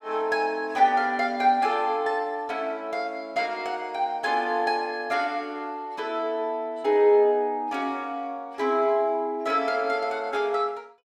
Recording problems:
none

